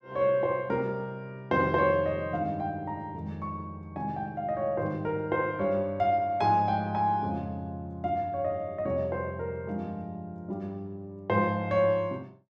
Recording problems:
none

